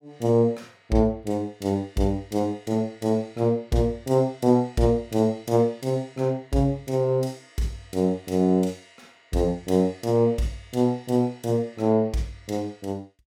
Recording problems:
none

